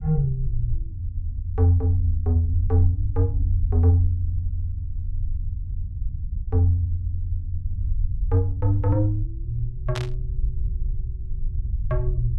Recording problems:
rumble; below 66 Hz, SNR 6 dB
static burst; at 10 s; peak -3 dB vs average level

